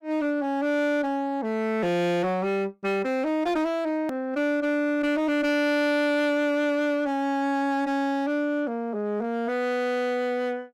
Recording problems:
distortion; hard clipping, signal-to-distortion ratio 10 dB
click at an edit; at 4 s

